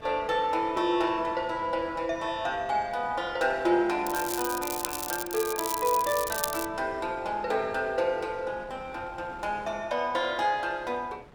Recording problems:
wind noise; below 930 Hz, SNR 20 dB
crackle; from 4 to 6.5 s; loose cable, SNR 5 dB

